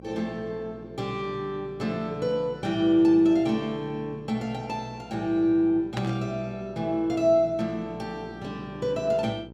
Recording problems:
hum; 60 Hz, harmonics up to 1 kHz, SNR 20 dB
burst of static; at 6 s; peak -5 dB vs average level

